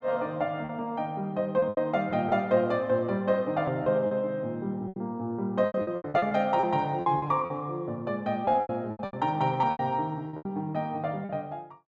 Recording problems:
packet loss; 12% of the sound replaced, filled with repeated pitch periods

